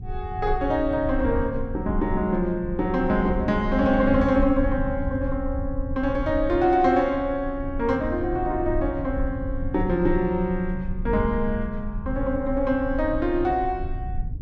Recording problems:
low-frequency rumble; below 82 Hz, strongest tone 24 Hz, SNR 8 dB

